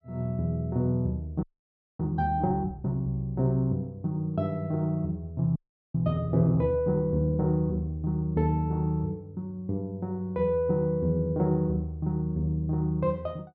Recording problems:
audio freezing; at 1.5 s for 0.5 s and at 5.5 s

